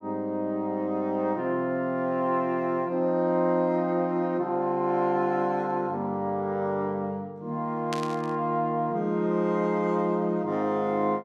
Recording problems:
burst of static; at 8 s; peak -3 dB vs average level

